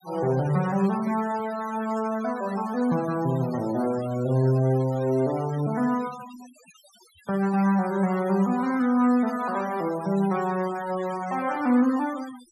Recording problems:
noise reduction artefacts; signal-to-artefact ratio 18 dB

